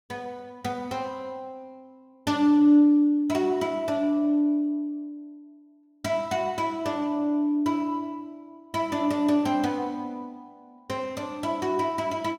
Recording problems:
none

